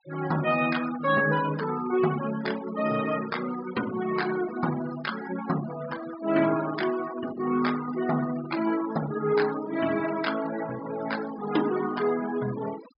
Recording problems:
treble missing; nothing above 5.5 kHz
denoising artefacts; signal-to-artefact ratio 13 dB

